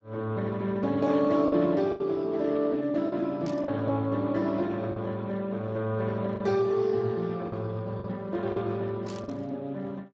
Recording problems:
lossy compression; Speex, log-spectral distance 3 dB
packet loss; 4% of the sound replaced, filled with the last packet
burst of static; at 3.5 s and at 9 s; peak -12 dB vs average level

